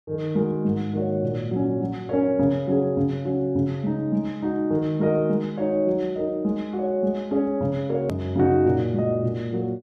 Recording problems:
edit click; at 8 s

